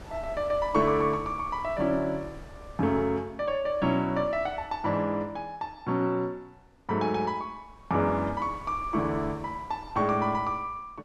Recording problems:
wind on the microphone; below 480 Hz, SNR 19 dB

